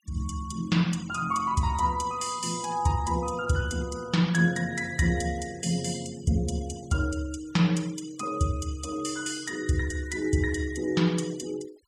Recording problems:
denoising artefacts; signal-to-artefact ratio 21 dB

